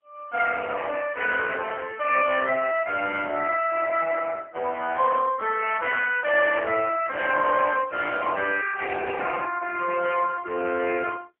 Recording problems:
telephone audio; 300 Hz to 2.9 kHz, AMR-NB, then MP3

